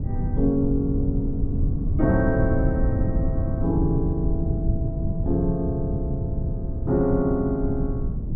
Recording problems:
low-frequency rumble; below 140 Hz, SNR 0 dB

